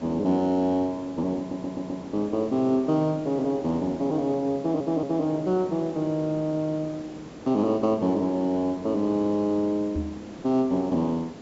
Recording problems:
low-pass filter; nothing above 8 kHz
background hiss; slope -7 dB per octave, SNR 17 dB
audio stuttering; at 1.5 s and at 4.5 s
microphone thump; at 10 s; peak -1 dB vs average level

